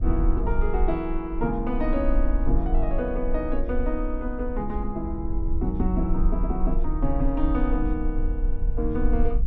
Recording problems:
low-frequency rumble; below 42 Hz, SNR 1 dB
wind noise; below 84 Hz, SNR 8 dB

